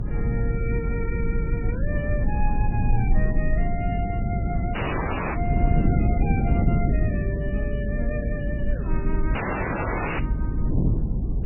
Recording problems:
lossy codec; MP3, log-spectral distance 4 dB, nothing above 2.4 kHz
low-frequency rumble; below 52 Hz, strongest tone 22 Hz, SNR 0 dB
wind on the microphone; below 200 Hz, SNR -5 dB
dropout; at 5 s for 0.5 s and at 9.5 s for 1 s

